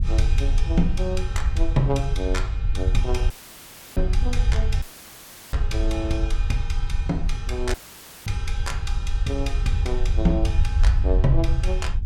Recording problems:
wind noise; below 68 Hz, SNR -3 dB
dropout; at 3.5 s for 0.5 s, at 5 s for 0.5 s and at 7.5 s for 0.5 s; filled with static

